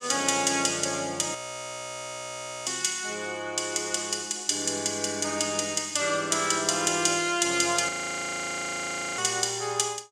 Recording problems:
audio freezing; at 1.5 s for 1.5 s and at 8 s for 1.5 s

